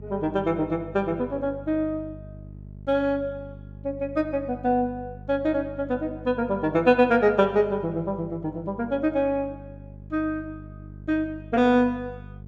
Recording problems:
hum; 50 Hz, harmonics up to 450 Hz, SNR 17 dB

